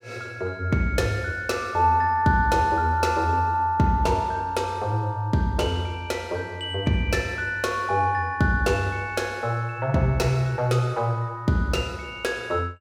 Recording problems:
none

